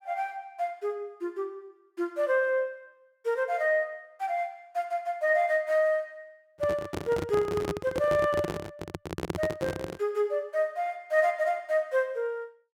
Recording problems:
handling noise; from 6.5 to 10 s; peak +2 dB vs average level

